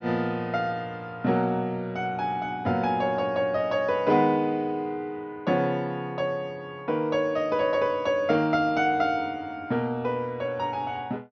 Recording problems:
treble cut off; nothing above 6.5 kHz

